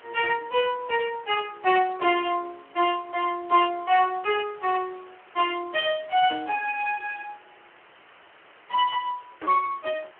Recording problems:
telephone audio; 300 Hz to 3.2 kHz, Speex
background hiss; SNR 26 dB

